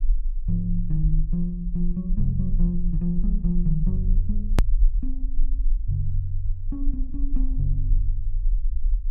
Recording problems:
low-frequency rumble; below 38 Hz, SNR -1 dB
click at an edit; at 4.5 s

